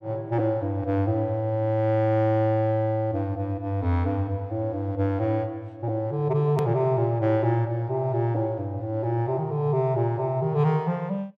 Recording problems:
click at an edit; at 6.5 s

